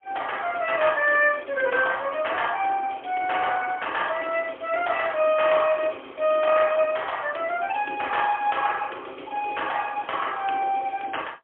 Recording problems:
phone line; 240 Hz to 3.4 kHz, AMR-NB, then MP3

